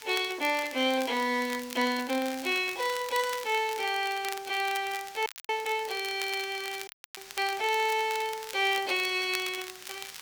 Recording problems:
background hiss; slope +2 dB per octave, SNR 17 dB
crackling; vinyl, SNR 13 dB
audio freezing; at 5.5 s and at 7 s

